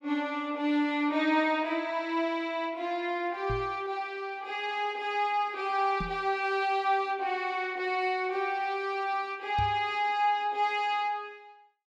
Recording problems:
knock on the microphone; at 3.5 s, at 6 s and at 9.5 s; peak -2 dB vs average level

